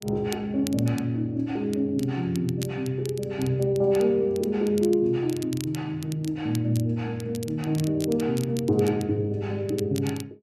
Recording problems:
crackling; vinyl, SNR 17 dB

